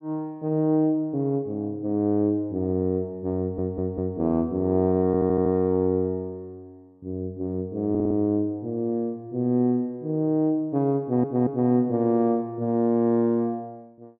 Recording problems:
audio stuttering; 4 times, first at 3.5 s

